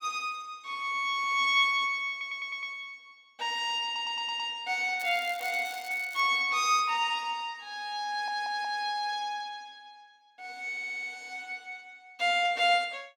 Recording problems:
audio stuttering; 4 times, first at 2 s
crackle; from 5 to 6 s; loose cable, SNR 18 dB

